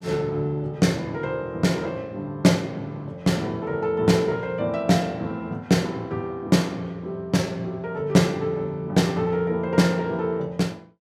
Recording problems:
none

